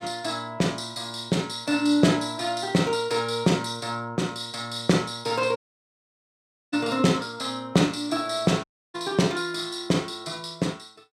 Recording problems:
audio cutting out; at 5.5 s for 1 s and at 8.5 s

